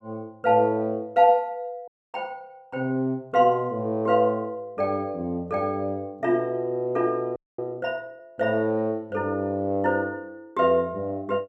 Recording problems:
frozen audio; at 2 s and at 7.5 s

